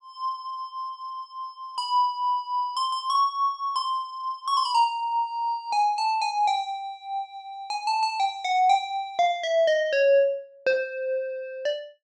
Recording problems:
none

